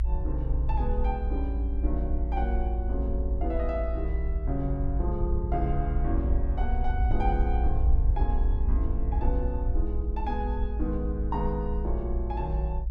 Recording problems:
rumble; below 58 Hz, SNR -4 dB

